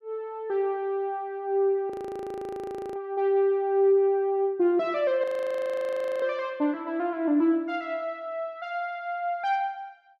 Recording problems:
frozen audio; at 2 s for 1 s and at 5 s for 1 s

